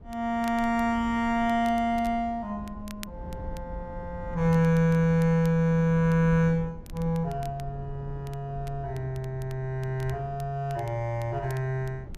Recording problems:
wind on the microphone; below 110 Hz, SNR 16 dB
crackling; vinyl, SNR 26 dB

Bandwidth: 14.5 kHz